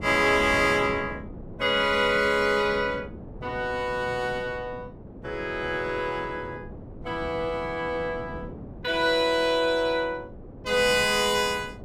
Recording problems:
wind noise; below 350 Hz, SNR 16 dB

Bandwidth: 16 kHz